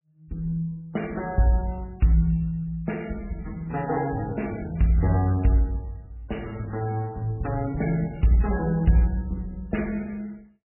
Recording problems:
codec artefacts; MP3, log-spectral distance 3 dB, nothing above 2.7 kHz

